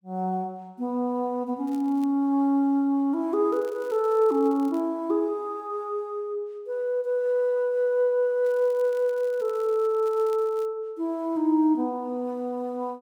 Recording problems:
crackling; at 1.5 s, from 3.5 to 5 s and from 8.5 to 11 s; loose cable, SNR 29 dB

